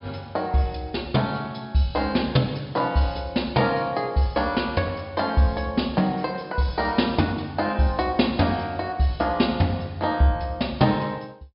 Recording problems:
treble missing; nothing above 5.5 kHz

